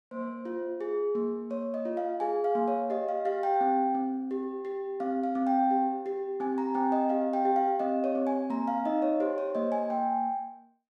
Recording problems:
none

